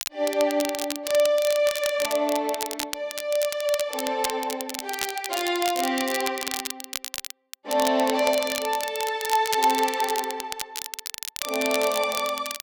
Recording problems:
crackle; vinyl, SNR 7 dB

